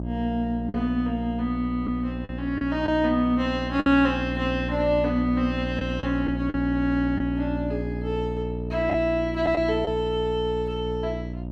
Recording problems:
electrical hum; 60 Hz, harmonics up to 660 Hz, SNR 6 dB
lost packets; 4% of the sound replaced, filled with the last packet

